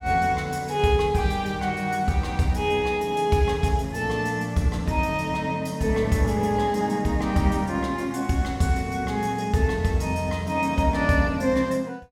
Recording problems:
none

